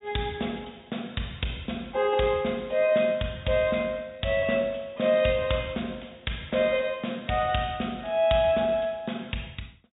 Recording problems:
treble missing; nothing above 4 kHz

